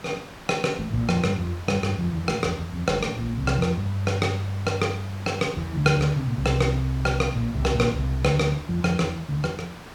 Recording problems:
hiss; slope -4 dB per octave, SNR 17 dB

